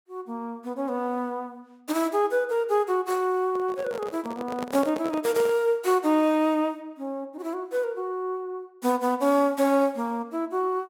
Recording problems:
microphone handling noise; from 3.5 to 5.5 s; peak -3 dB vs average level

